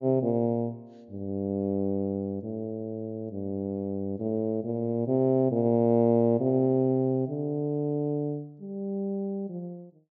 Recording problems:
treble cut off; nothing above 7.3 kHz

